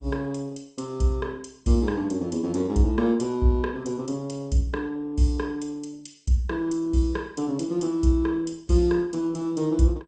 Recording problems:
codec artefacts; Opus, then MP2, log-spectral distance 2 dB, nothing above 8.2 kHz

